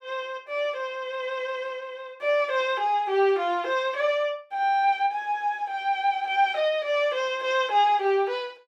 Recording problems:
none

